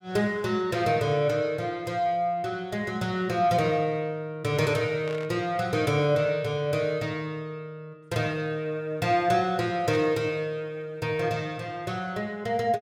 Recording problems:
burst of static; at 5 s and at 10 s; peak -9 dB vs average level

